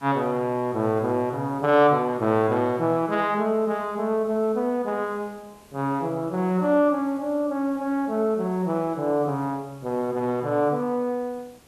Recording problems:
background hiss; slope -4 dB per octave, SNR 28 dB

